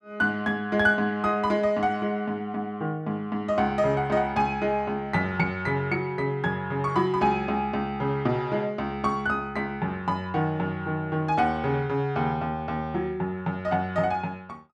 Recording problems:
none

